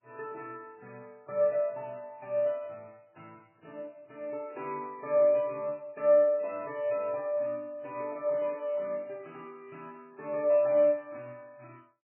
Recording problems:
lossy compression; MP3, log-spectral distance 2 dB, nothing above 2.5 kHz

